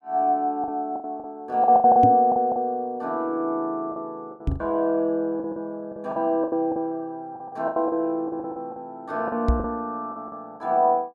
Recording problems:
packet loss; 13% of the sound replaced, filled with the last packet
microphone thump; at 2 s, at 4.5 s and at 9.5 s; peak +5 dB vs average level

